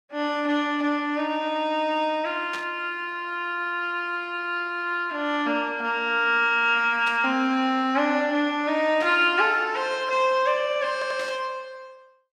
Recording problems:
burst of static; 4 times, first at 2.5 s; peak -8 dB vs average level
audio stuttering; at 11 s

